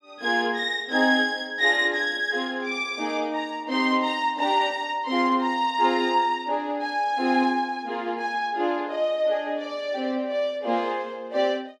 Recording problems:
none

